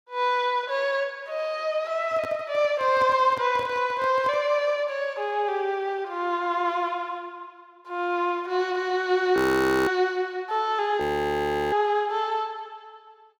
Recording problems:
handling noise; from 2 to 4.5 s; peak -9 dB vs average level
frozen audio; at 9.5 s for 0.5 s and at 11 s for 0.5 s

